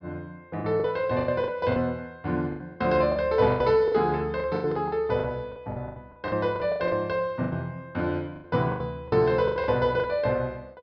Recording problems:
treble cut off; nothing above 5.5 kHz
lost packets; 15% of the sound replaced, filled with the last packet

